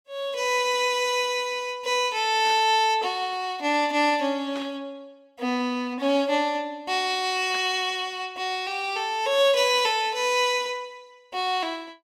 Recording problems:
static burst; at 2.5 s, at 4.5 s and at 7.5 s; peak -10 dB vs average level

